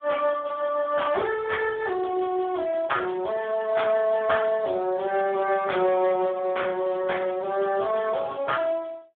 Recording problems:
telephone audio; 320 Hz to 3.6 kHz, Speex

